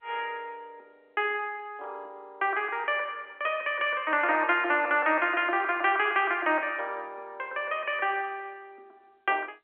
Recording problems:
phone line; 260 Hz to 3.4 kHz, G.711

